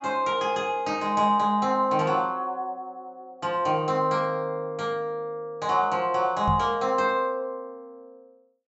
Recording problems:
treble missing; nothing above 7.8 kHz
knock on the microphone; at 6.5 s; peak +1 dB vs average level

